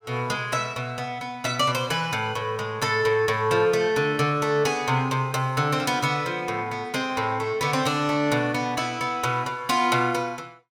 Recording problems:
none

